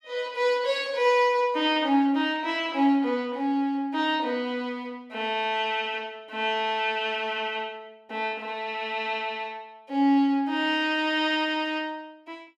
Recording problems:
none

